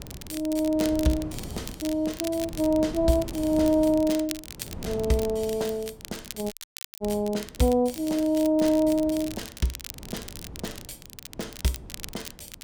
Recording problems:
wind on the microphone; below 310 Hz, SNR 16 dB
crackling; vinyl, SNR 15 dB
audio cutting out; at 6.5 s

